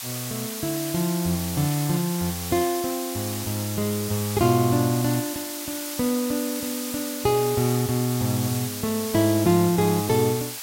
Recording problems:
background hiss; slope +2 dB per octave, SNR 7 dB

